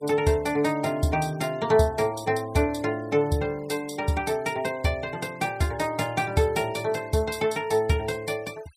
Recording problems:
noise reduction artefacts; signal-to-artefact ratio 23 dB

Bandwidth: 14.5 kHz